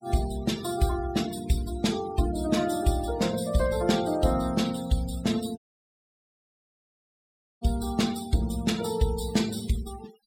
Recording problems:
noise reduction artefacts; signal-to-artefact ratio 14 dB
dropout; at 5.5 s for 2 s

